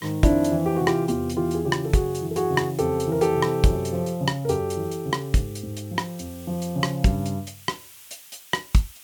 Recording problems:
background hiss; SNR 21 dB

